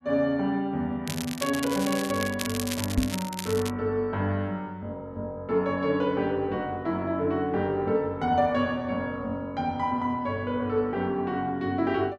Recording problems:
crackling; from 1 to 3.5 s; loose cable, SNR 8 dB
microphone thump; at 3 s; peak +7 dB vs average level

